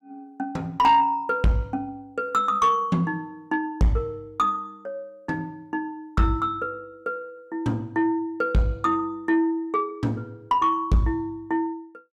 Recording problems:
distorted audio; soft clipping, signal-to-distortion ratio 12 dB

